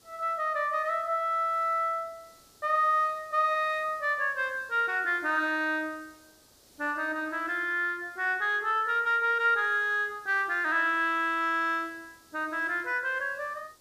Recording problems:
background hiss; SNR 29 dB

